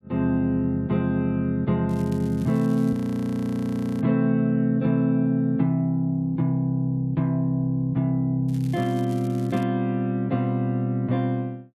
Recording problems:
crackle; from 2 to 3 s and from 8.5 to 9.5 s; loose cable, SNR 27 dB
audio freezing; at 3 s for 1 s

